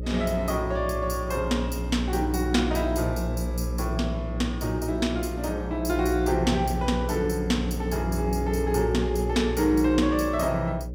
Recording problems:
electrical hum; 60 Hz, harmonics up to 600 Hz, SNR 5 dB

